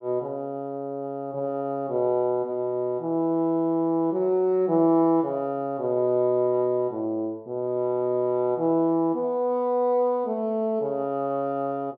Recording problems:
treble cut off; nothing above 5.5 kHz

